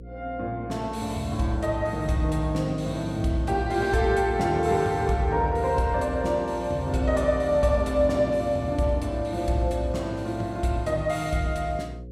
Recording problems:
electrical hum; 60 Hz, harmonics up to 540 Hz, SNR 16 dB

